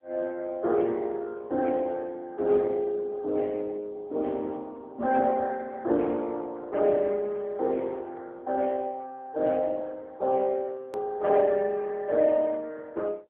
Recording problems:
telephone audio; 240 Hz to 2.3 kHz, AMR-NB
click at an edit; at 11 s

